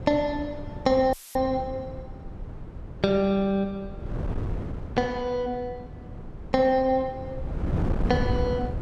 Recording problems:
wind on the microphone; below 210 Hz, SNR 8 dB
dropout; at 1 s; filled with static

